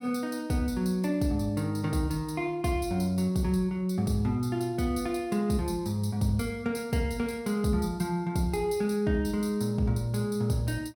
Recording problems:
none

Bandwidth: 17 kHz